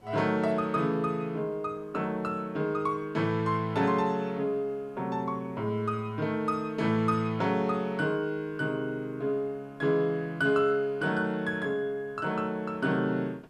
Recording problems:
hiss; slope -8 dB per octave, SNR 28 dB

